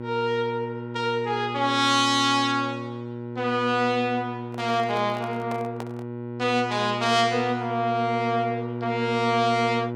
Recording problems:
mains hum; 60 Hz, harmonics up to 1.4 kHz, SNR 9 dB
handling noise; from 4.5 to 6 s; peak -7 dB vs average level

